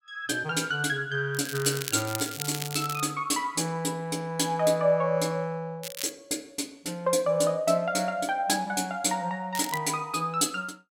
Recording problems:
crackle; from 1.5 to 3 s, at 6 s and at 9.5 s; loose cable, SNR 9 dB

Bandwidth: 16.5 kHz